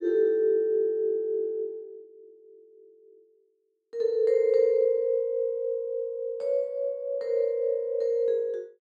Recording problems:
none

